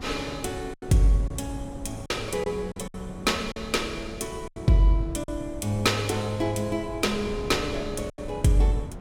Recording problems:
wind noise; below 270 Hz, SNR 13 dB
packet loss; 6% of the sound replaced, filled with silence

